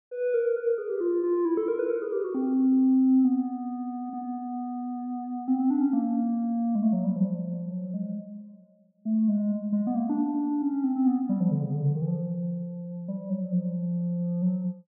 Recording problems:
none

